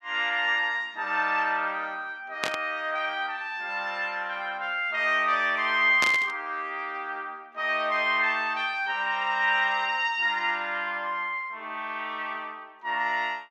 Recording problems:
burst of static; at 2.5 s and at 6 s; peak +3 dB vs average level

